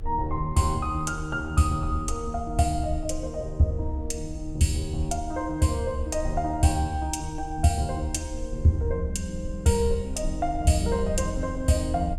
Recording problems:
low-frequency rumble; below 70 Hz, SNR 10 dB

